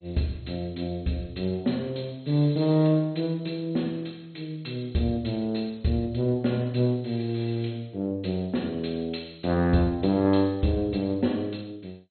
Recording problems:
codec artefacts; MP2, log-spectral distance 4 dB, nothing above 4.2 kHz

